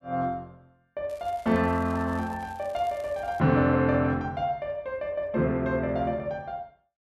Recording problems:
crackle; from 1 to 3.5 s; loose cable, SNR 27 dB

